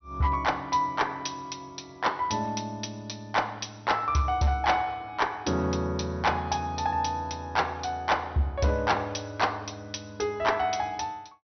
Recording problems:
low-pass filter; nothing above 6 kHz
distorted audio; hard clipping, signal-to-distortion ratio 11 dB

